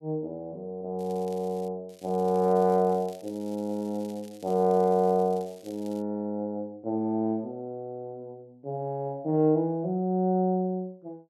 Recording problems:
crackle; at 1 s and from 2 to 6 s; loose cable, SNR 26 dB

